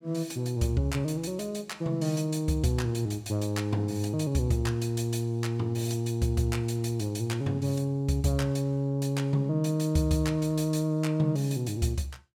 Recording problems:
none

